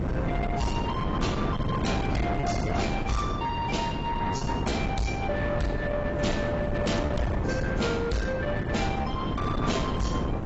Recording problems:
lossy compression; AAC, log-spectral distance 3 dB, nothing above 7.6 kHz
distortion; soft clipping, signal-to-distortion ratio 7 dB
wind noise; below 550 Hz, SNR 0 dB
packet loss; 2% of the sound replaced, filled with repeated pitch periods

